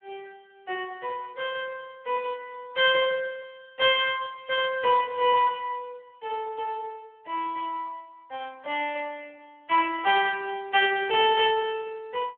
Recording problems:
telephone audio; 300 Hz to 3.4 kHz, Speex

